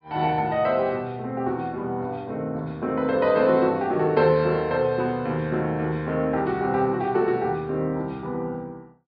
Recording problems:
low-pass filter; nothing above 5.5 kHz

